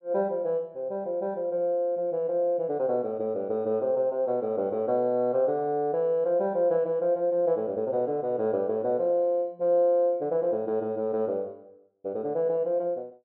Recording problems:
treble cut off; nothing above 4.6 kHz

